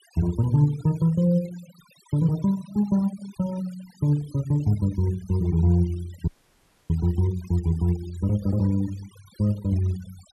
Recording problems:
denoising artefacts; signal-to-artefact ratio 23 dB
dropout; at 6.5 s for 0.5 s

